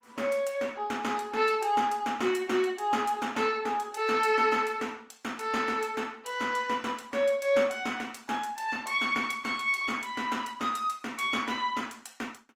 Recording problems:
lossy codec; Opus, log-spectral distance 3 dB

